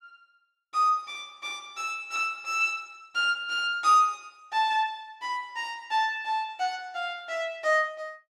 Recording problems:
none

